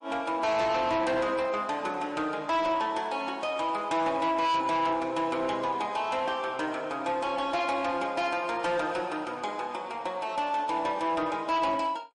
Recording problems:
codec artefacts; MP3, log-spectral distance 2 dB, nothing above 9.2 kHz
distorted audio; soft clipping, signal-to-distortion ratio 11 dB

